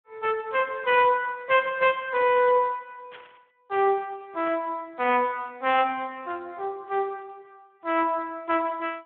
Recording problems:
telephone audio; 280 Hz to 3.4 kHz, Speex
static burst; at 3 s and at 4.5 s; peak -14 dB vs average level

